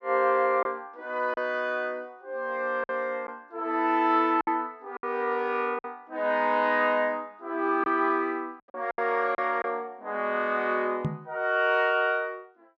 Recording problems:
packet loss; 4% of the sound replaced, filled with silence
microphone bump; at 11 s; peak +2 dB vs average level

